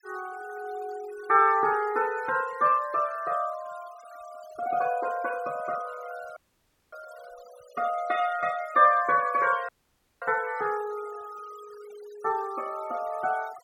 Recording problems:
noise reduction artefacts; signal-to-artefact ratio 22 dB
audio cutting out; at 6.5 s for 0.5 s and at 9.5 s for 0.5 s

